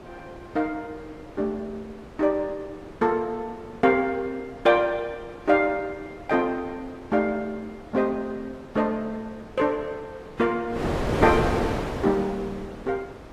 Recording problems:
lossy compression; AAC, log-spectral distance 2 dB, nothing above 13.5 kHz
wind noise; below 790 Hz, SNR 9 dB

